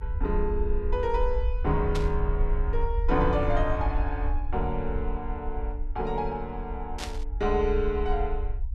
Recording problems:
rumble; below 58 Hz, SNR 2 dB
static burst; at 2 s and at 7 s; peak -1 dB vs average level

